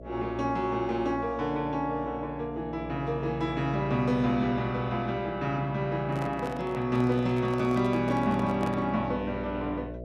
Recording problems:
electrical hum; 60 Hz, harmonics up to 660 Hz, SNR 14 dB
microphone handling noise; from 6 to 9 s; peak -5 dB vs average level

